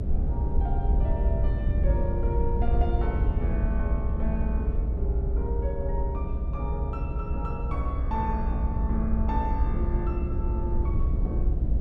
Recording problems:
electrical hum; 60 Hz, harmonics up to 720 Hz, SNR 6 dB
low-frequency rumble; below 70 Hz, SNR -7 dB

